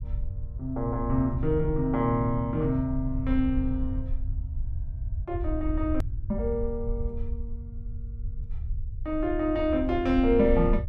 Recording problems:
low-frequency rumble; below 74 Hz, SNR 7 dB
edit click; at 6 s

